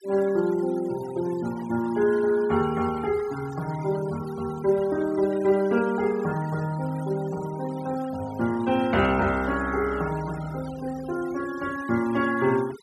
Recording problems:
noise reduction artefacts; signal-to-artefact ratio 18 dB

